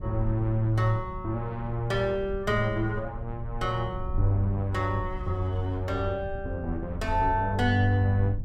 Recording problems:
rumble; below 76 Hz, SNR 10 dB

